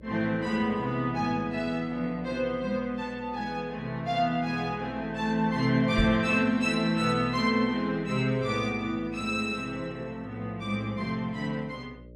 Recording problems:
electrical hum; 60 Hz, harmonics up to 600 Hz, SNR 22 dB
microphone bump; at 6 s; peak +3 dB vs average level

